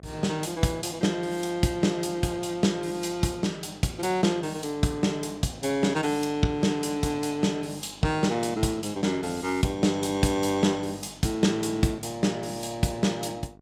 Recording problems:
hum; 50 Hz, harmonics up to 1.1 kHz, SNR 25 dB

